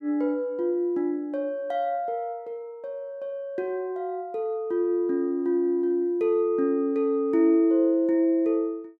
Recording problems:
none

